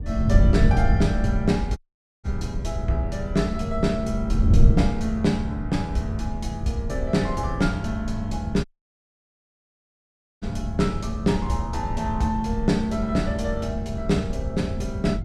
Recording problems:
wind noise; below 110 Hz, SNR 1 dB
dropout; at 2 s and at 8.5 s for 2 s

